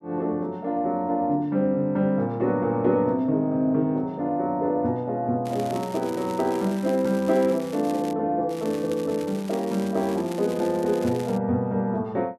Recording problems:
crackling; from 5.5 to 8 s and from 8.5 to 11 s; loose cable, SNR 19 dB

